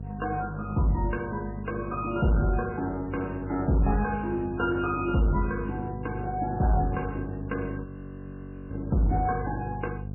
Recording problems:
lossy compression; MP3, log-spectral distance 4 dB, nothing above 2.5 kHz
distortion; hard clipping, signal-to-distortion ratio 11 dB
electrical hum; 50 Hz, harmonics up to 500 Hz, SNR 9 dB
frozen audio; at 8 s for 1 s

